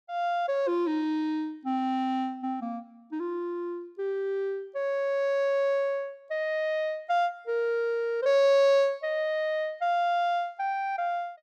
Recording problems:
none

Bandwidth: 13 kHz